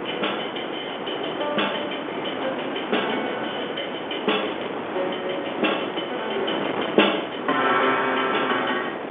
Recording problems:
phone line; 260 Hz to 3.5 kHz, G.711
wind noise; below 1.2 kHz, SNR 4 dB
crackling; from 2.5 to 6.5 s; loose cable, SNR 22 dB

